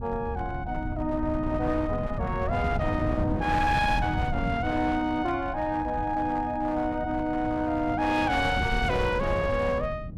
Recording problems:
distorted audio; hard clipping, uneven, signal-to-distortion ratio 12 dB
wind noise; below 170 Hz, SNR 6 dB

